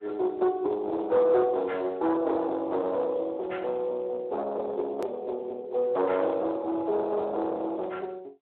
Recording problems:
phone line; 390 Hz to 2.1 kHz, Speex
distortion; soft clipping, signal-to-distortion ratio 13 dB
edit click; at 5 s

